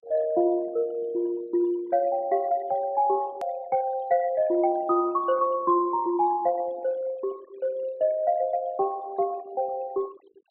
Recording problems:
treble missing; nothing above 4 kHz
denoising artefacts; signal-to-artefact ratio 22 dB
edit click; at 3.5 s

